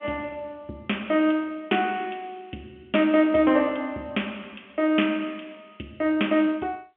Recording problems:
telephone audio; 240 Hz to 3.4 kHz, G.711

